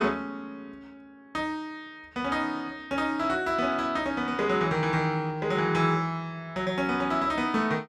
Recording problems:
none

